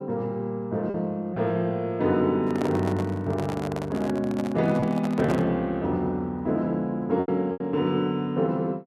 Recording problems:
lost packets; 3% of the sound replaced, filled with repeated pitch periods
handling noise; from 2.5 to 5.5 s; peak -1 dB vs average level

